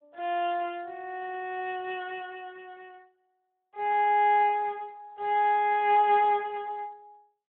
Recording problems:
phone line; 340 Hz to 3.5 kHz, Speex

